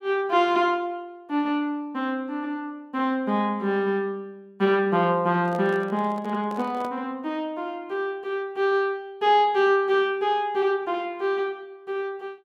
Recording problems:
handling noise; from 5.5 to 7 s; peak -9 dB vs average level

